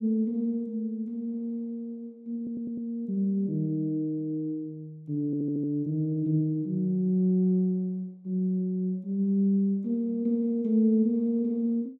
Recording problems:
stutter; at 2.5 s and at 5.5 s

